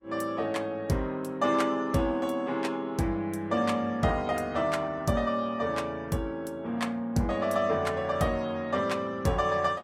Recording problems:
lossy codec; Vorbis, log-spectral distance 2 dB, nothing above 16 kHz

